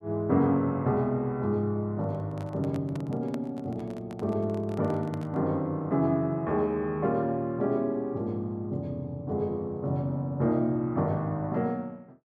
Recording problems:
handling noise; from 2 to 5.5 s; peak -7 dB vs average level

